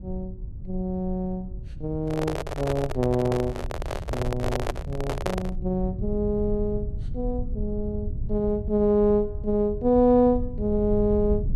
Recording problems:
low-frequency rumble; below 88 Hz, SNR 9 dB
handling noise; from 2 to 5.5 s; peak +2 dB vs average level

